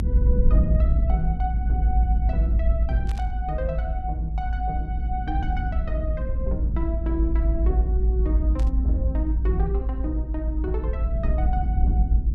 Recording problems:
low-frequency rumble; below 58 Hz, strongest tone 56 Hz, SNR -8 dB
burst of static; at 3 s and at 8.5 s; peak -7 dB vs average level

